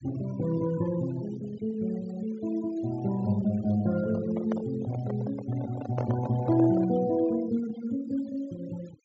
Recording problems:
low-pass filter; nothing above 8 kHz
noise reduction artefacts; signal-to-artefact ratio 18 dB
handling noise; from 4 to 7 s; peak -2 dB vs average level

